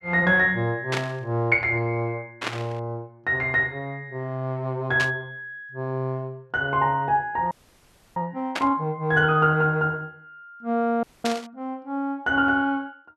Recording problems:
burst of static; 5 times, first at 1 s; peak +1 dB vs average level
audio freezing; at 7.5 s for 0.5 s and at 11 s

